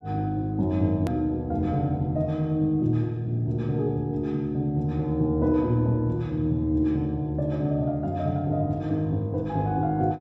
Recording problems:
edit click; at 1 s

